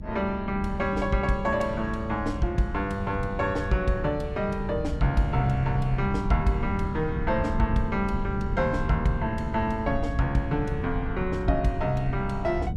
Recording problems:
hum; 50 Hz, harmonics up to 800 Hz, SNR 21 dB
low-frequency rumble; below 130 Hz, SNR 6 dB

